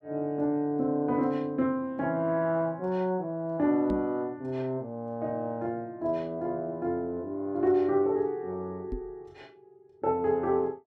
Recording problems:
microphone bump; at 4 s and at 9 s; peak -3 dB vs average level

